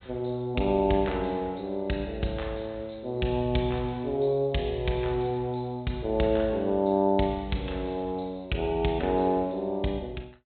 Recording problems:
treble cut off; nothing above 4 kHz

